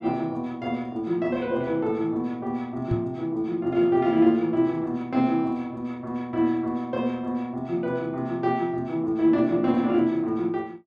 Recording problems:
knock on the microphone; at 3 s; peak +1 dB vs average level

